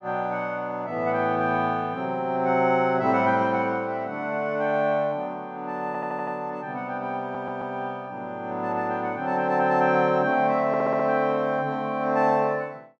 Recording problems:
stutter; at 6 s, at 7 s and at 11 s

